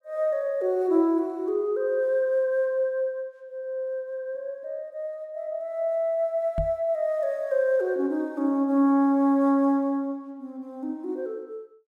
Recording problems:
microphone thump; at 6.5 s; peak -2 dB vs average level

